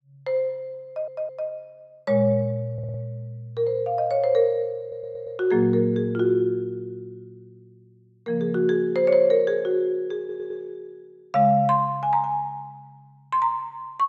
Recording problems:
stutter; 4 times, first at 1 s

